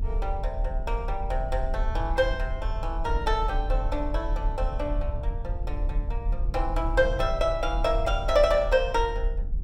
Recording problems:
rumble; below 48 Hz, strongest tone 40 Hz, SNR 3 dB

